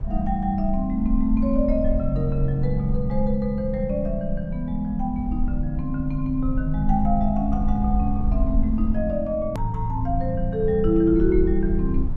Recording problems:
low-frequency rumble; below 58 Hz, SNR 5 dB
edit click; at 9.5 s

